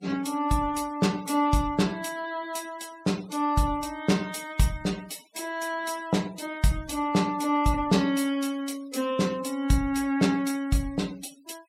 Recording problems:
noise reduction artefacts; signal-to-artefact ratio 20 dB

